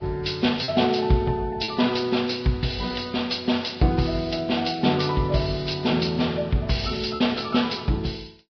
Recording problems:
lossy compression; Vorbis, log-spectral distance 7 dB, nothing above 5.2 kHz
packet loss; 1.4% of the sound replaced, filled with repeated pitch periods

